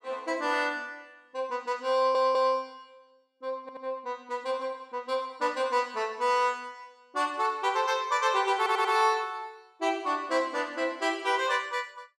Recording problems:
audio stuttering; at 2 s, at 3.5 s and at 8.5 s

